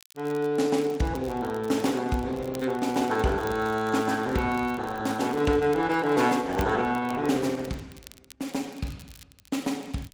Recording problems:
lossy compression; Opus, log-spectral distance 3 dB, nothing above 19 kHz
crackle; vinyl, SNR 24 dB

